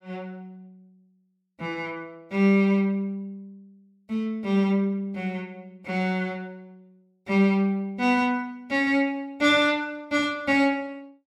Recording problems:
none

